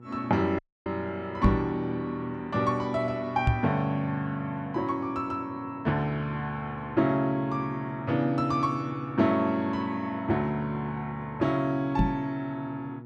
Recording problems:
hum; 60 Hz, harmonics up to 1.3 kHz, SNR 17 dB
dropout; at 0.5 s
microphone bump; at 1.5 s, at 3.5 s and at 12 s; peak +9 dB vs average level

